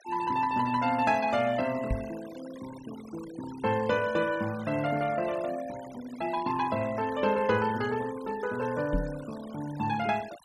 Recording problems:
denoising artefacts; signal-to-artefact ratio 17 dB
microphone thump; at 2 s and at 9 s; peak +2 dB vs average level

